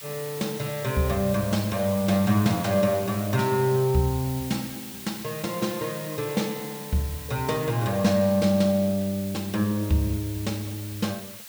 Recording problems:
hiss; slope +2 dB per octave, SNR 12 dB

